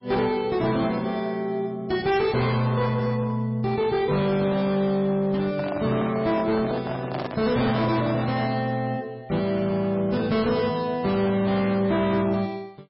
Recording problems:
lossy codec; MP3, log-spectral distance 3 dB, nothing above 5 kHz
distorted audio; hard clipping, signal-to-distortion ratio 11 dB
handling noise; from 5.5 to 8.5 s; peak -4 dB vs average level

